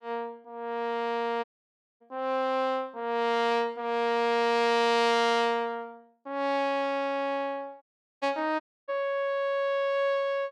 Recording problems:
audio cutting out; at 1.5 s for 0.5 s, at 8 s and at 8.5 s

